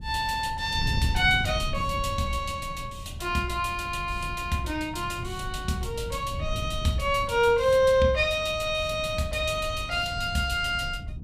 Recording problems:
wind noise; below 130 Hz, SNR 10 dB

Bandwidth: 15 kHz